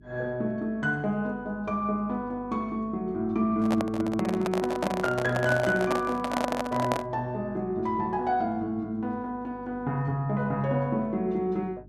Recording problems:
hum; 50 Hz, harmonics up to 400 Hz, SNR 22 dB
microphone handling noise; from 3.5 to 7 s; peak +4 dB vs average level

